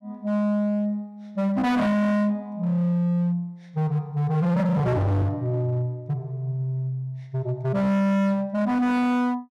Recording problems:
distortion; hard clipping, signal-to-distortion ratio 6 dB

